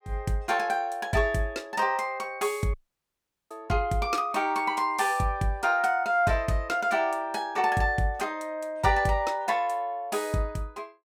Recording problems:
dropout; at 2.5 s for 1 s

